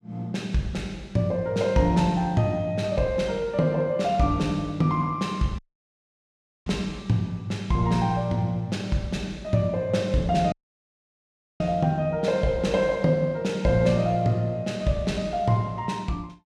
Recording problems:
audio cutting out; at 5.5 s for 1 s and at 11 s for 1 s

